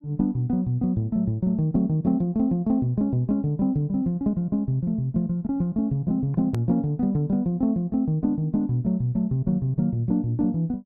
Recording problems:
click at an edit; at 6.5 s

